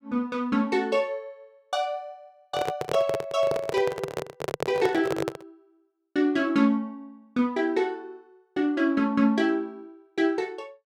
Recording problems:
microphone handling noise; from 2.5 to 5.5 s; peak +2 dB vs average level

